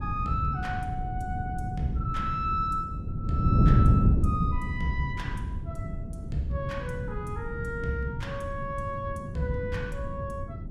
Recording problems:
wind noise; below 170 Hz, SNR -2 dB

